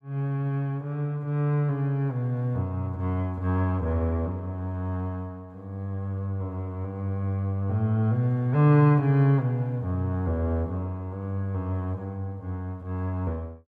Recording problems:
none

